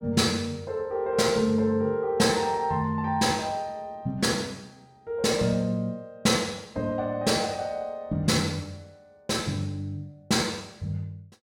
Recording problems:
none

